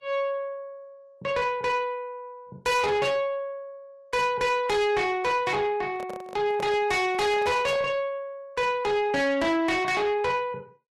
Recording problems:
codec artefacts; Vorbis, log-spectral distance 2 dB, nothing above 12.7 kHz
distorted audio; soft clipping, signal-to-distortion ratio 8 dB
handling noise; from 6 to 8 s; peak -7 dB vs average level

